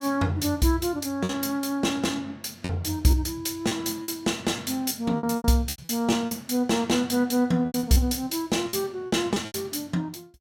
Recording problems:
lost packets; 9% of the sound replaced, filled with repeated pitch periods

